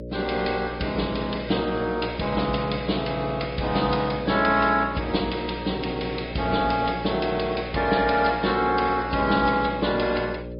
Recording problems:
treble missing; nothing above 5 kHz
lossy codec; AAC, then Vorbis, log-spectral distance 4 dB
hum; 60 Hz, harmonics up to 600 Hz, SNR 11 dB

